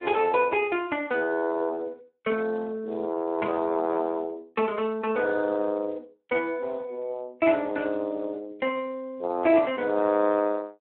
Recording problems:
telephone audio; 260 Hz to 3.4 kHz, Speex

